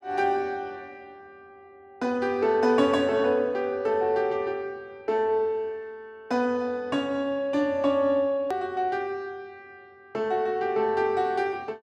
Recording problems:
edit click; at 8.5 s

